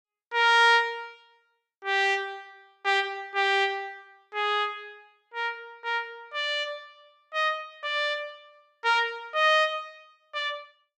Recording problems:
none

